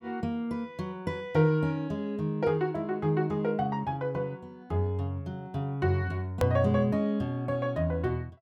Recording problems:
hard cut with a click; at 6.5 s

